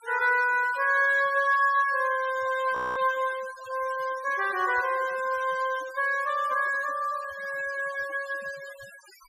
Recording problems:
denoising artefacts; signal-to-artefact ratio 19 dB
audio freezing; at 3 s

